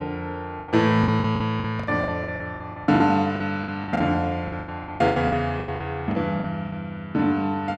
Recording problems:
packet loss; 17% of the sound replaced, filled with the last packet

